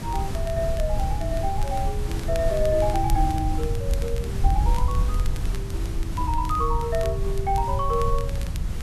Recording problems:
background hiss; slope -4 dB per octave, SNR 11 dB
low-frequency rumble; below 92 Hz, SNR 3 dB
wind on the microphone; below 72 Hz, SNR 4 dB
crackling; vinyl, SNR 18 dB

